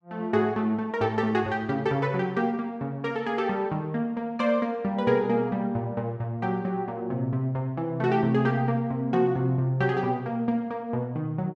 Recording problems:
none

